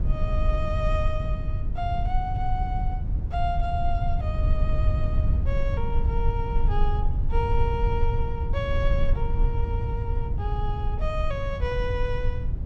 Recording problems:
low-frequency rumble; below 82 Hz, SNR -5 dB

